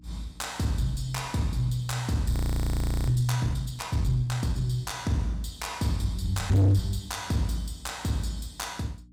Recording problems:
distorted audio; soft clipping, signal-to-distortion ratio 6 dB
electrical hum; 60 Hz, harmonics up to 300 Hz, SNR 26 dB
audio freezing; at 2.5 s for 1 s

